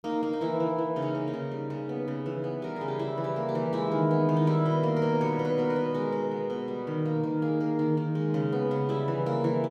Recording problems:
none

